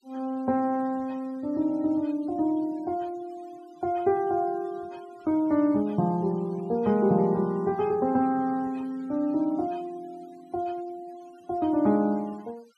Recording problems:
denoising artefacts; signal-to-artefact ratio 26 dB

